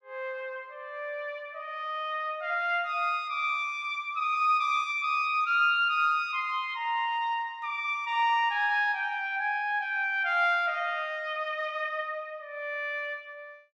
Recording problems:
none

